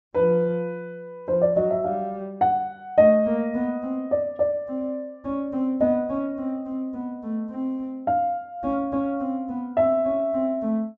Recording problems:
low-pass filter; nothing above 8 kHz

